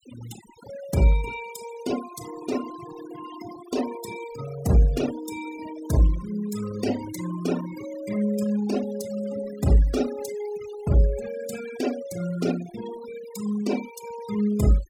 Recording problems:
denoising artefacts; signal-to-artefact ratio 13 dB

